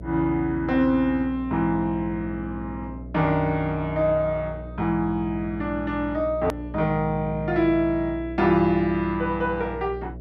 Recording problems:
hum; 60 Hz, harmonics up to 660 Hz, SNR 13 dB
click at an edit; at 6.5 s

